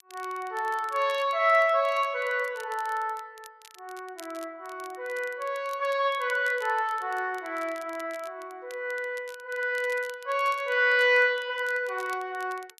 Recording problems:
crackle; vinyl, SNR 24 dB

